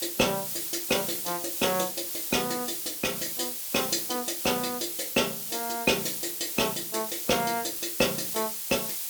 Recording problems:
hiss; slope +3 dB per octave, SNR 2 dB

